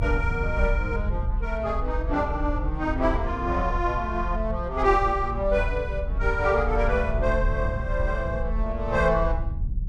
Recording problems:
low-frequency rumble; below 66 Hz, strongest tone 36 Hz, SNR 4 dB

